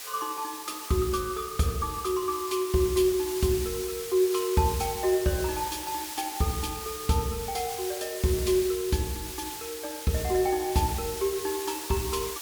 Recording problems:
hiss; slope +2 dB per octave, SNR 8 dB

